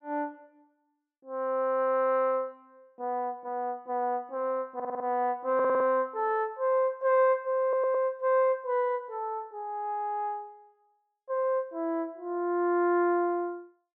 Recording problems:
stutter; at 5 s, at 5.5 s and at 7.5 s

